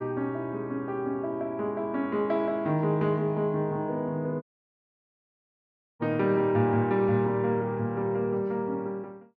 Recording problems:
dropout; at 4.5 s for 1.5 s

